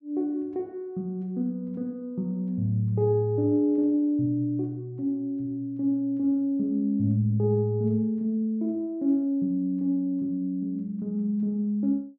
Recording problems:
none

